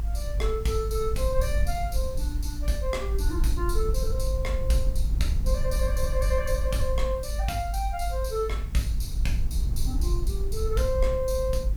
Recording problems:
hiss; slope -2 dB per octave, SNR 23 dB
rumble; below 54 Hz, SNR -1 dB

